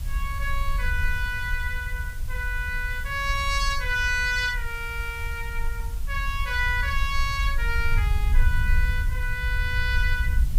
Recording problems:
background hiss; slope -1 dB per octave, SNR 18 dB
rumble; below 64 Hz, SNR 2 dB

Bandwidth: 15.5 kHz